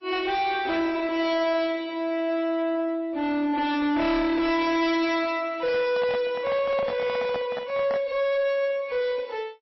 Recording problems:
codec artefacts; MP3, then MP3, log-spectral distance 2 dB, nothing above 5.7 kHz
distortion; soft clipping, signal-to-distortion ratio 7 dB
microphone handling noise; from 5.5 to 8 s; peak -3 dB vs average level

